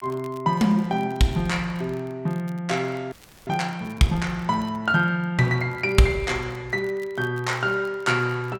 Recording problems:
crackle; vinyl, SNR 30 dB
frozen audio; at 3 s

